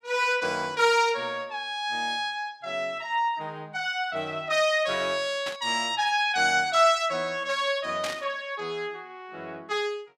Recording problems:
burst of static; at 5.5 s and at 8 s; peak -3 dB vs average level

